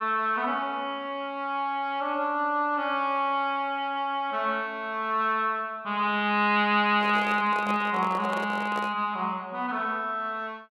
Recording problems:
handling noise; from 7 to 9 s; peak -5 dB vs average level

